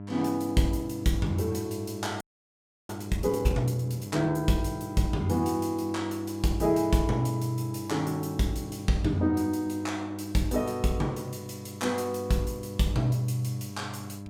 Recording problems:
mains hum; 50 Hz, harmonics up to 1 kHz, SNR 12 dB
frozen audio; at 2 s for 0.5 s

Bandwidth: 17.5 kHz